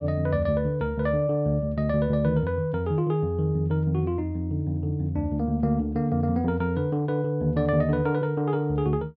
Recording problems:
none

